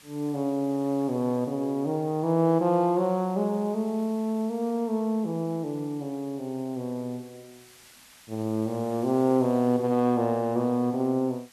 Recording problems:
hiss; slope +1 dB per octave, SNR 26 dB

